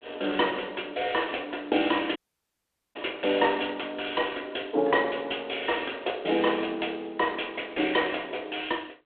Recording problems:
telephone audio; 260 Hz to 3.4 kHz, G.726
dropout; at 2 s for 1 s

